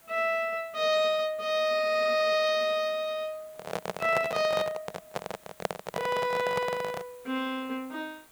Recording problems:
hiss; slope -3 dB per octave, SNR 27 dB
handling noise; from 3.5 to 7 s; peak +3 dB vs average level

